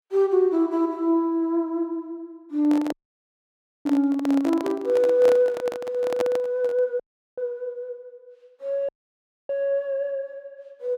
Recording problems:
microphone handling noise; from 2.5 to 7 s; peak -1 dB vs average level
audio cutting out; at 3 s for 1 s, at 7 s and at 9 s for 0.5 s

